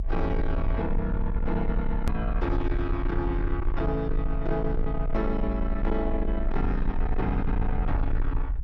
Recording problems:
distorted audio; soft clipping, signal-to-distortion ratio 11 dB
rumble; below 50 Hz, strongest tone 22 Hz, SNR 2 dB
click at an edit; at 2 s

